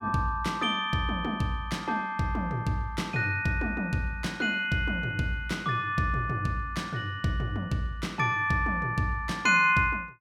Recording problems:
none

